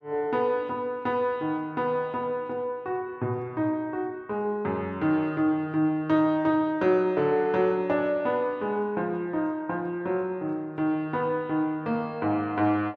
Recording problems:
none

